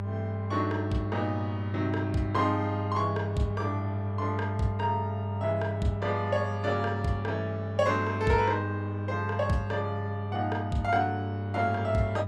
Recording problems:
electrical hum; 50 Hz, harmonics up to 1.2 kHz, SNR 3 dB

